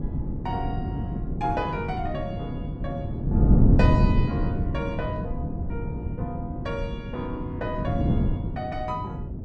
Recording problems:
wind noise; below 200 Hz, SNR -6 dB

